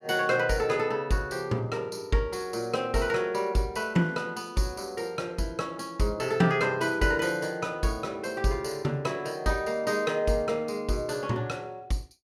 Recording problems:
none

